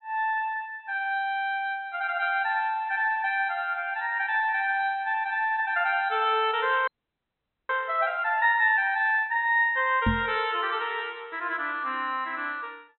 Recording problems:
treble cut off; nothing above 4.1 kHz
audio freezing; at 7 s for 1 s
microphone thump; at 10 s; peak +4 dB vs average level

